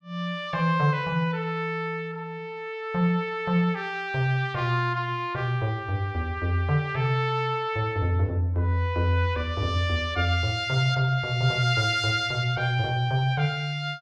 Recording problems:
none

